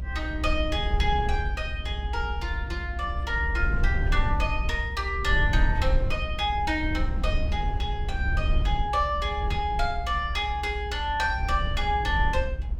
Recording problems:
rumble; below 70 Hz, SNR 1 dB

